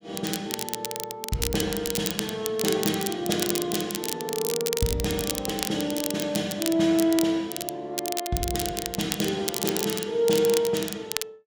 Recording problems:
crackle; vinyl, SNR 4 dB

